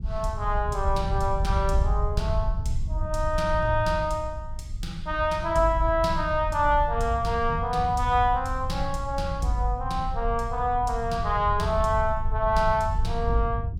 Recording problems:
rumble; below 80 Hz, SNR 6 dB

